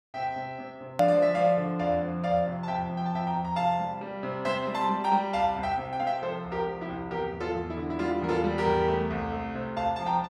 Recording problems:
hard cut with a click; at 1 s

